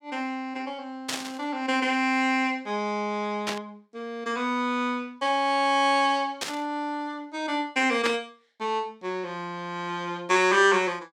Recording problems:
burst of static; 4 times, first at 1 s; peak +2 dB vs average level

